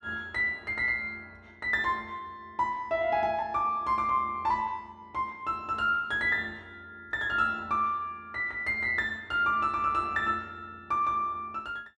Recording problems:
none

